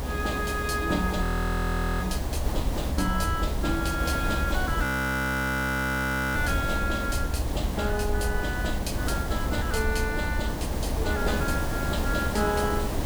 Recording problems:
hum; 50 Hz, harmonics up to 1.1 kHz, SNR 19 dB
hiss; slope -6 dB per octave, SNR 3 dB
low-frequency rumble; below 72 Hz, SNR 3 dB
audio freezing; at 1 s for 1 s and at 5 s for 1.5 s

